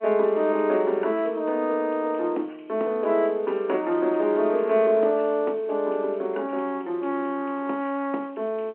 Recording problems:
phone line; 240 Hz to 3.1 kHz, G.711

